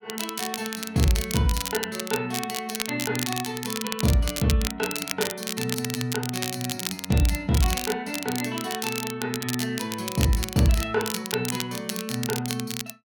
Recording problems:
crackling; vinyl, SNR 4 dB

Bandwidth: 18 kHz